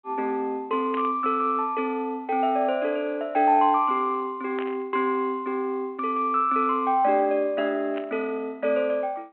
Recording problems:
phone line; 260 Hz to 3.3 kHz, G.726
static burst; at 1 s, at 4.5 s and at 8 s; peak -9 dB vs average level

